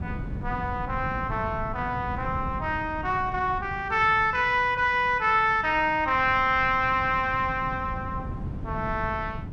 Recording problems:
wind noise; below 190 Hz, SNR 12 dB

